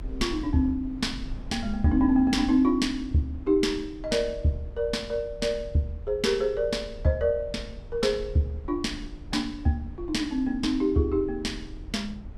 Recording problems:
rumble; below 76 Hz, SNR 15 dB

